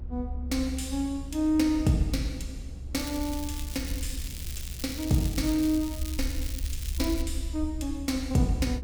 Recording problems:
low-frequency rumble; below 70 Hz, SNR 8 dB
wind noise; below 190 Hz, SNR 18 dB
crackle; from 3 to 7 s; loose cable, SNR 11 dB

